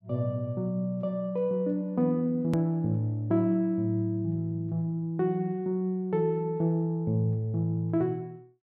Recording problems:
click at an edit; at 2.5 s

